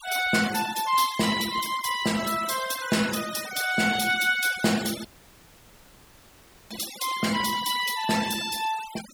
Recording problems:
denoising artefacts; signal-to-artefact ratio 11 dB
audio cutting out; at 5 s for 1.5 s

